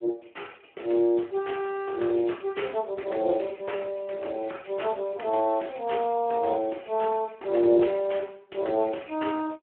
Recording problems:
phone line; 260 Hz to 3.2 kHz, Speex

